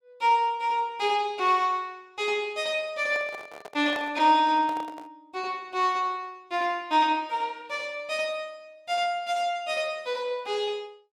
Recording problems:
handling noise; from 3 to 5 s; peak -7 dB vs average level

